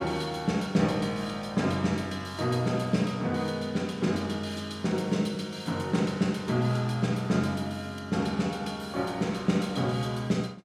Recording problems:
none

